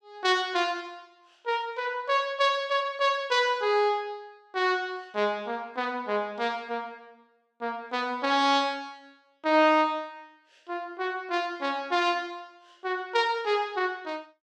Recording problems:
none

